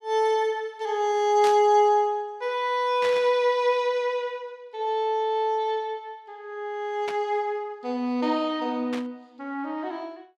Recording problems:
burst of static; 4 times, first at 1.5 s; peak -5 dB vs average level

